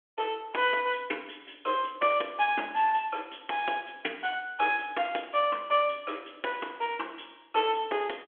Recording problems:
telephone audio; 260 Hz to 3.4 kHz, G.726

